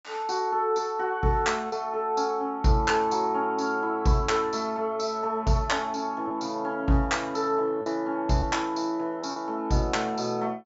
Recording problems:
low-pass filter; nothing above 8 kHz
packet loss; 1.9% of the sound replaced, filled with repeated pitch periods

